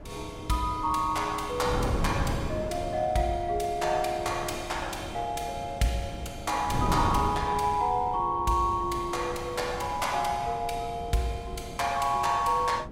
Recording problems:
wind on the microphone; below 300 Hz, SNR 9 dB

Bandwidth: 16.5 kHz